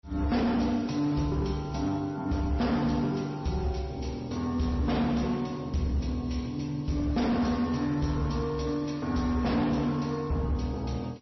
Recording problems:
lossy codec; MP3, then MP3, log-spectral distance 3 dB, nothing above 5.8 kHz
distortion; hard clipping, signal-to-distortion ratio 11 dB

